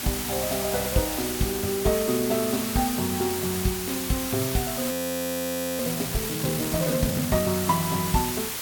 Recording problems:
hiss; slope 0 dB per octave, SNR 2 dB
audio freezing; at 5 s for 1 s

